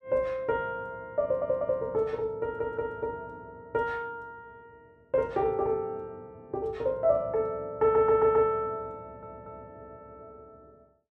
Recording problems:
audio stuttering; 4 times, first at 1 s

